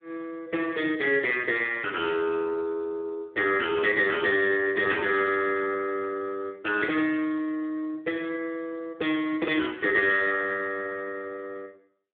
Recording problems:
phone line; 340 Hz to 3.4 kHz, Speex

